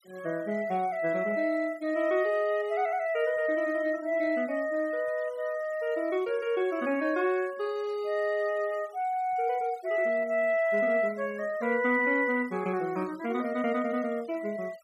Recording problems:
noise reduction artefacts; signal-to-artefact ratio 25 dB

